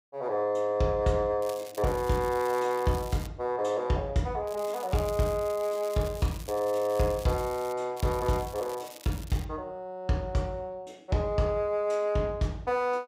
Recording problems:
crackle; from 1.5 to 3.5 s, from 4.5 to 7.5 s and from 8 to 9.5 s; loose cable, SNR 18 dB

